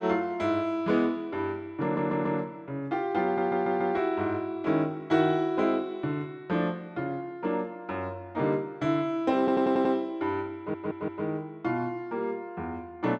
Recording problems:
stutter; 4 times, first at 2 s

